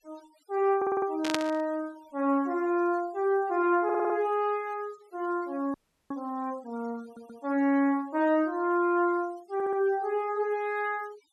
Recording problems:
denoising artefacts; signal-to-artefact ratio 26 dB
stutter; 4 times, first at 1 s
static burst; at 1 s; peak +4 dB vs average level
audio freezing; at 5.5 s

